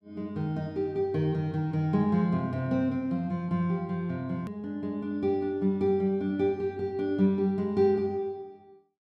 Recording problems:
hard cut with a click; at 4.5 s

